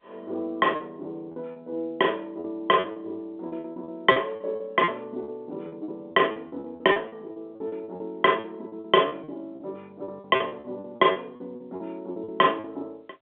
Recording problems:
telephone audio; 240 Hz to 3.5 kHz, G.711
packet loss; 15% of the sound replaced, filled with repeated pitch periods

